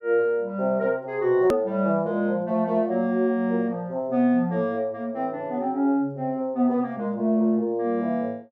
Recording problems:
edit click; at 1.5 s

